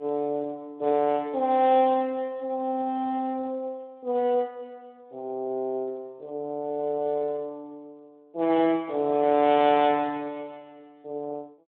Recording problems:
telephone audio; 190 Hz to 3.6 kHz, Speex

